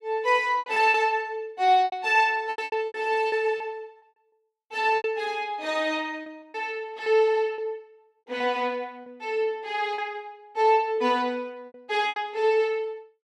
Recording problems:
lost packets; 9% of the sound replaced, filled with repeated pitch periods

